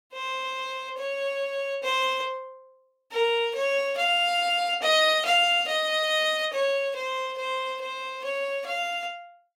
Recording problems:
none

